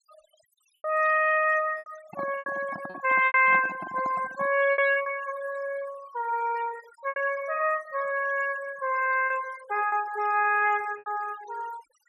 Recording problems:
noise reduction artefacts; signal-to-artefact ratio 18 dB
packet loss; 6% of the sound replaced, filled with repeated pitch periods
microphone handling noise; from 2 to 4.5 s; peak -7 dB vs average level

